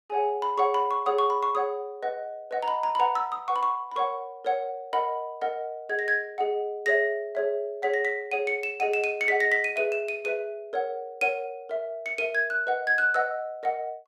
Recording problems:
none

